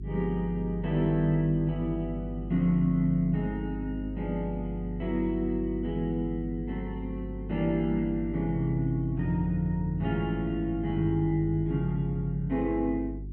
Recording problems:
hum; 50 Hz, harmonics up to 400 Hz, SNR 9 dB

